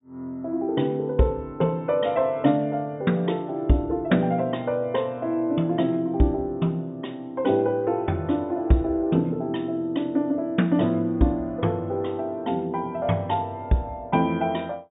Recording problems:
treble missing; nothing above 3.7 kHz

